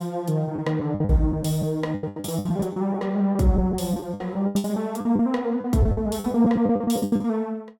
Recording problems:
packet loss; 18% of the sound replaced, filled with the last packet

